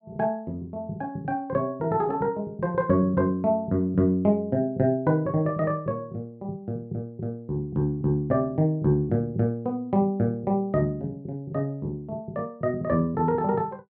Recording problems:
none

